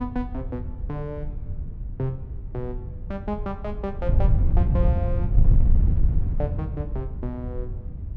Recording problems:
wind noise; below 88 Hz, SNR -6 dB

